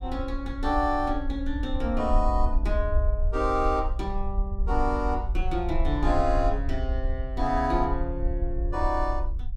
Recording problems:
low-frequency rumble; below 56 Hz, SNR 2 dB

